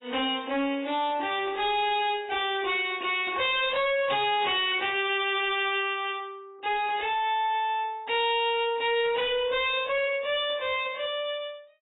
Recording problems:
lossy compression; AAC, log-spectral distance 5 dB, nothing above 3.3 kHz
distortion; hard clipping, uneven, signal-to-distortion ratio 5 dB

